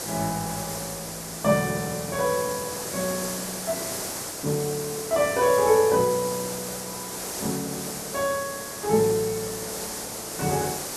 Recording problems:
background hiss; SNR 6 dB

